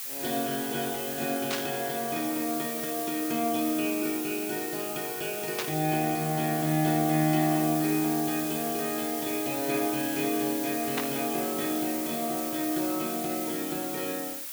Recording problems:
hiss; slope +3 dB per octave, SNR 4 dB
static burst; at 1.5 s, at 5.5 s and at 11 s; peak +2 dB vs average level

